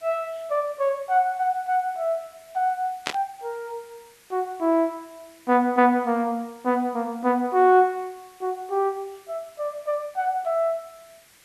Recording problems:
background hiss; SNR 28 dB
burst of static; at 3 s; peak +1 dB vs average level

